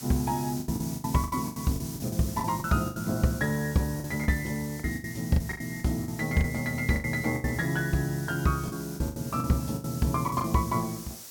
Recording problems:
hiss; SNR 13 dB
lost packets; 14% of the sound replaced, filled with the last packet

